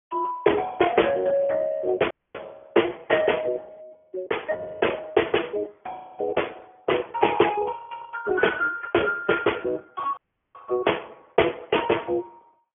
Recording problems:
phone line; 300 Hz to 3.2 kHz, Speex
audio cutting out; at 2 s and at 10 s

